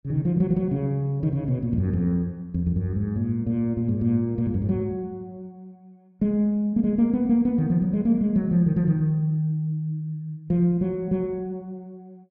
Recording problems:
none

